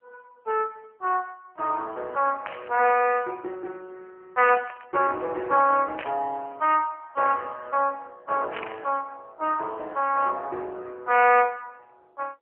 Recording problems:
telephone audio; 340 Hz to 3 kHz, AMR-NB
static burst; 4 times, first at 2.5 s; peak -6 dB vs average level

